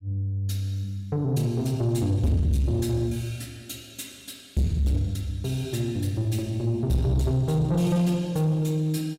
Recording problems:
distortion; soft clipping, signal-to-distortion ratio 10 dB

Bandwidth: 16 kHz